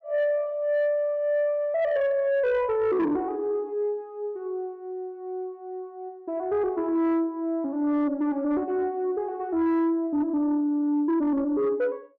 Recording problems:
distortion; soft clipping, signal-to-distortion ratio 12 dB

